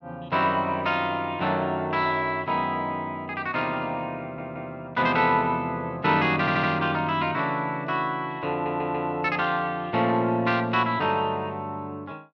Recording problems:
stutter; at 4 s, at 6.5 s and at 8.5 s

